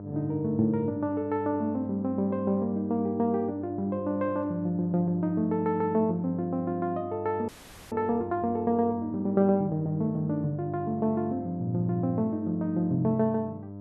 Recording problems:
electrical hum; 50 Hz, harmonics up to 1 kHz, SNR 13 dB
frozen audio; at 7.5 s

